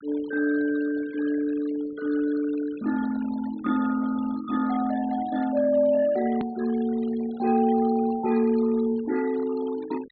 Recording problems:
treble cut off; nothing above 4.3 kHz
denoising artefacts; signal-to-artefact ratio 20 dB
hard cut with a click; at 6.5 s

